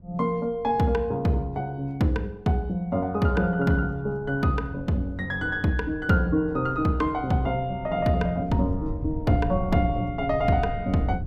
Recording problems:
wind noise; below 110 Hz, SNR 12 dB

